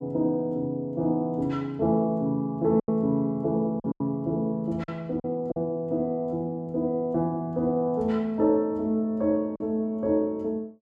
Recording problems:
packet loss; 3% of the sound replaced, filled with silence

